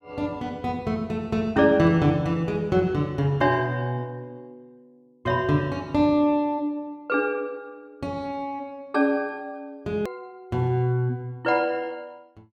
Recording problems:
click at an edit; at 10 s

